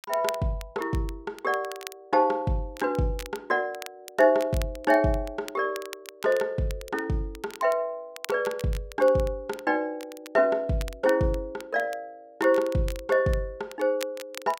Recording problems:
crackle; vinyl, SNR 18 dB

